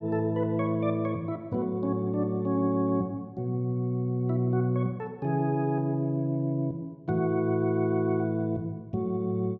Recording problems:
none

